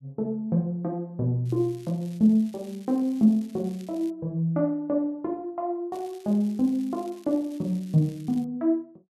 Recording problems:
crackle; from 1.5 to 4 s and from 6 to 8.5 s; loose cable, SNR 27 dB

